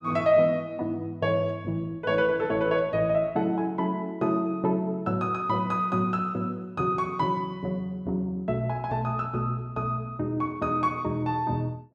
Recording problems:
none

